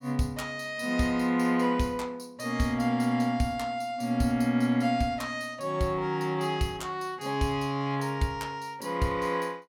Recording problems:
none

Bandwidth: 17 kHz